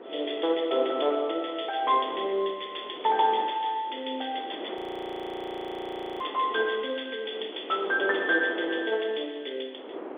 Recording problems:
telephone audio; 300 Hz to 3.4 kHz, G.711
wind on the microphone; below 720 Hz, SNR 11 dB
audio freezing; at 5 s for 1.5 s

